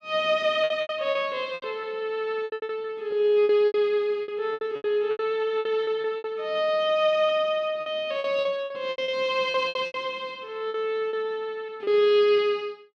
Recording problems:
packet loss; 14% of the sound replaced, filled with repeated pitch periods

